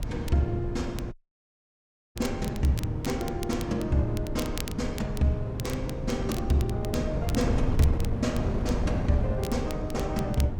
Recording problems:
mains hum; 50 Hz, harmonics up to 500 Hz, SNR 18 dB
wind on the microphone; below 180 Hz, SNR 4 dB
crackle; vinyl, SNR 15 dB
audio cutting out; at 1 s for 1 s

